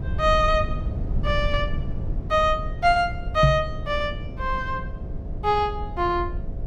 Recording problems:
hum; 60 Hz, harmonics up to 720 Hz, SNR 18 dB
rumble; below 98 Hz, SNR 7 dB
microphone thump; at 3.5 s; peak +8 dB vs average level

